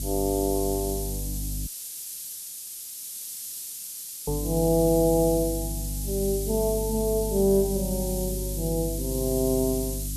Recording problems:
electrical hum; 50 Hz, harmonics up to 300 Hz, SNR 8 dB
hiss; SNR 7 dB
audio cutting out; at 1.5 s for 2.5 s

